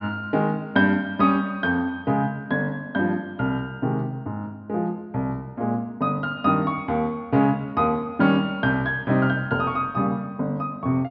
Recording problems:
treble cut off; nothing above 5.5 kHz

